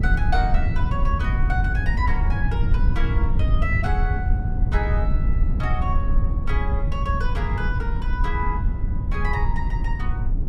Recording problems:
low-frequency rumble; below 80 Hz, SNR -6 dB

